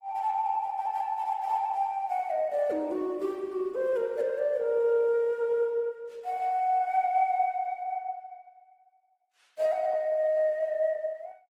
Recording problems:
lossy compression; Opus, log-spectral distance 2 dB

